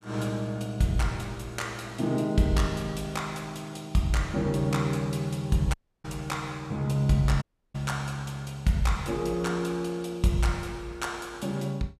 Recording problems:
audio cutting out; at 5.5 s and at 7.5 s

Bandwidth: 14.5 kHz